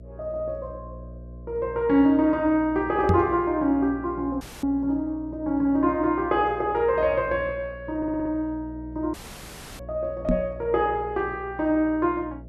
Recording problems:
hum; 60 Hz, harmonics up to 660 Hz, SNR 17 dB
microphone bump; at 3 s and at 10 s; peak +5 dB vs average level
dropout; at 4.5 s and at 9 s for 0.5 s
stutter; at 8 s

